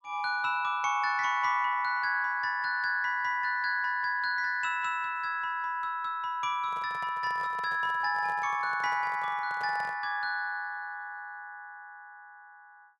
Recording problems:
microphone handling noise; from 6.5 to 10 s; peak -12 dB vs average level

